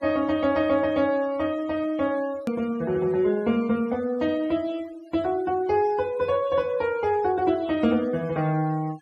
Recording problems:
noise reduction artefacts; signal-to-artefact ratio 24 dB
edit click; at 2.5 s

